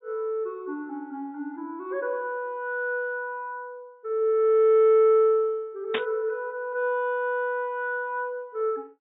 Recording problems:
treble missing; nothing above 4 kHz
static burst; at 6 s; peak +1 dB vs average level

